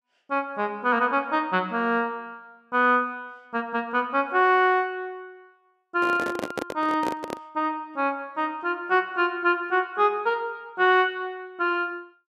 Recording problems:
microphone handling noise; from 6 to 7.5 s; peak -1 dB vs average level

